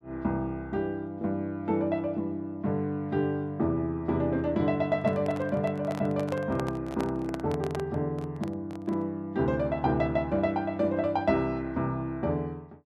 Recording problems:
microphone handling noise; from 5 to 9 s; peak -2 dB vs average level

